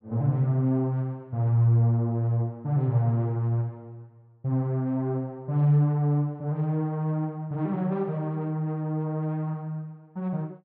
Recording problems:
none

